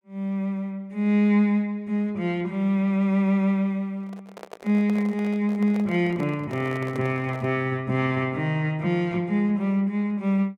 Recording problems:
microphone handling noise; from 4 to 7.5 s; peak -10 dB vs average level

